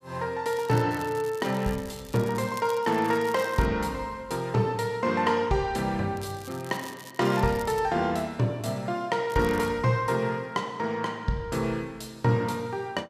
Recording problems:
crackling; 4 times, first at 0.5 s; loose cable, SNR 19 dB

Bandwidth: 14.5 kHz